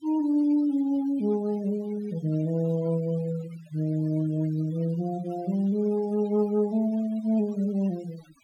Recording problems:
denoising artefacts; signal-to-artefact ratio 22 dB

